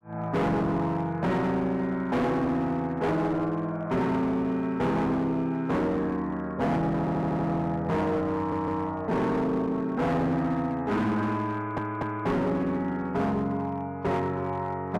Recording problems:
distortion; hard clipping, uneven, signal-to-distortion ratio 8 dB
stutter; at 7 s, at 8.5 s and at 12 s

